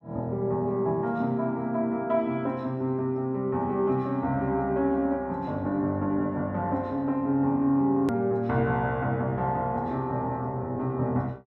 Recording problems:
hard cut with a click; at 8 s

